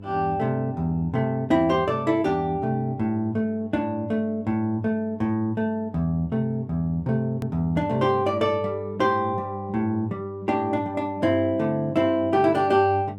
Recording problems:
hum; 50 Hz, harmonics up to 600 Hz, SNR 16 dB
edit click; at 7.5 s

